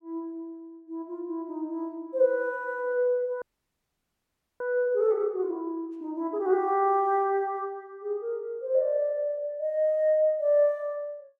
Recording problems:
frozen audio; at 3.5 s for 1 s

